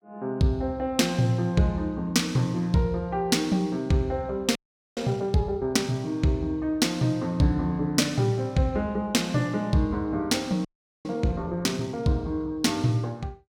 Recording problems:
audio freezing; at 4.5 s and at 11 s

